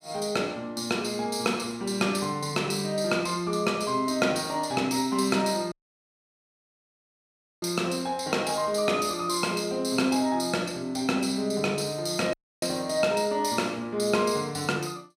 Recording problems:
audio cutting out; at 5.5 s for 2 s and at 12 s

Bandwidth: 15.5 kHz